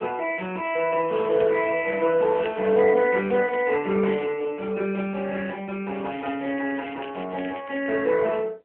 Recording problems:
telephone audio; 300 Hz to 3.1 kHz, AMR-NB
crackling; from 1 to 4 s and from 6 to 8 s; loose cable, SNR 21 dB

